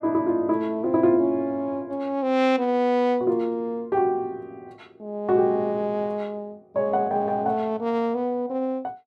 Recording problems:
none

